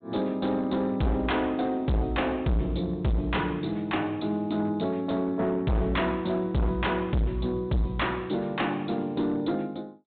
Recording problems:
treble cut off; nothing above 4 kHz
distorted audio; hard clipping, signal-to-distortion ratio 6 dB

